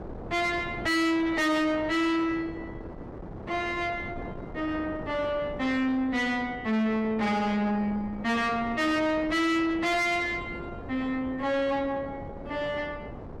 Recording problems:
distortion; soft clipping, signal-to-distortion ratio 6 dB
wind noise; below 600 Hz, SNR 13 dB

